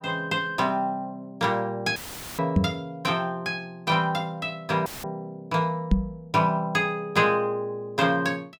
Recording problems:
dropout; at 2 s and at 5 s; filled with static
knock on the microphone; at 2.5 s and at 6 s; peak +8 dB vs average level

